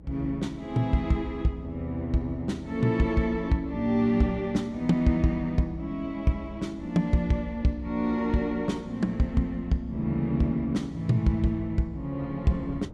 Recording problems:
hum; 60 Hz, harmonics up to 300 Hz, SNR 23 dB
wind on the microphone; below 300 Hz, SNR 22 dB

